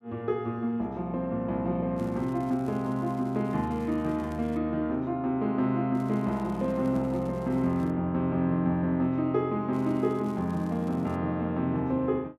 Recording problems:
crackling; from 2 to 4.5 s, from 6 to 8 s and from 9.5 to 11 s; loose cable, SNR 29 dB

